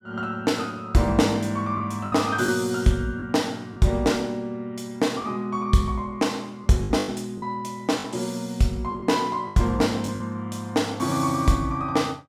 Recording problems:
lost packets; 5% of the sound replaced, filled with the last packet

